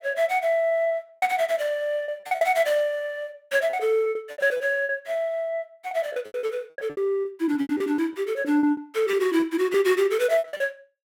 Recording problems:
packet loss; 15% of the sound replaced, filled with repeated pitch periods

